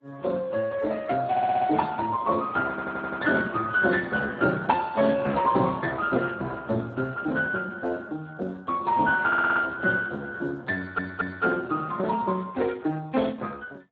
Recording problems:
codec artefacts; AAC, then Speex, log-spectral distance 3 dB
audio stuttering; 4 times, first at 1.5 s

